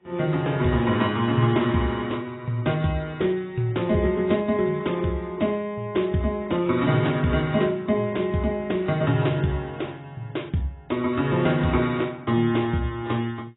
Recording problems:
codec artefacts; AAC, log-spectral distance 4 dB, nothing above 3.5 kHz

